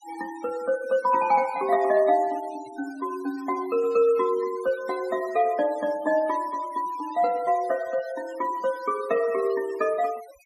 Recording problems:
denoising artefacts; signal-to-artefact ratio 21 dB

